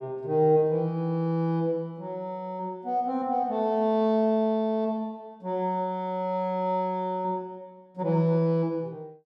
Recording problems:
none

